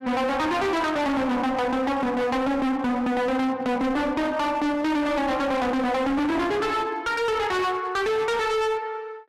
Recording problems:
distorted audio; hard clipping, signal-to-distortion ratio 6 dB

